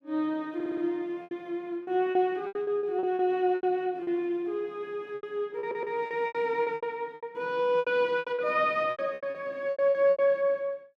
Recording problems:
packet loss; 15% of the sound replaced, filled with repeated pitch periods
stutter; at 0.5 s and at 5.5 s

